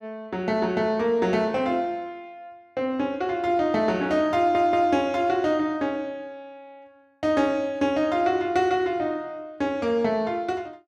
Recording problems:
stutter; at 4.5 s

